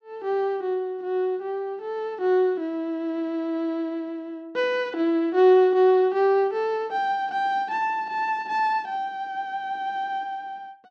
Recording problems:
none

